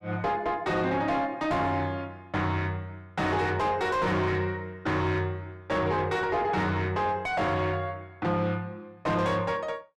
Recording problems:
distortion; soft clipping, signal-to-distortion ratio 7 dB

